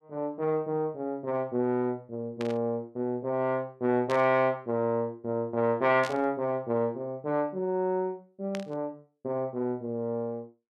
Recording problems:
burst of static; 4 times, first at 2.5 s; peak -5 dB vs average level

